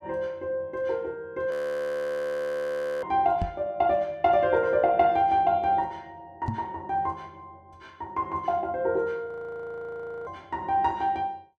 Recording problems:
audio freezing; at 1.5 s for 1.5 s and at 9.5 s for 1 s
microphone thump; at 3.5 s and at 6.5 s; peak +1 dB vs average level

